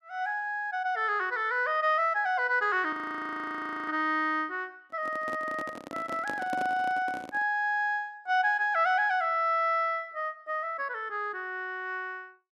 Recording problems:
audio freezing; at 3 s for 1 s
handling noise; from 5 to 7.5 s; peak -4 dB vs average level

